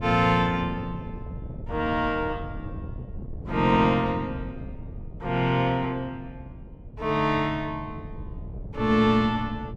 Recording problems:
wind on the microphone; below 170 Hz, SNR 14 dB

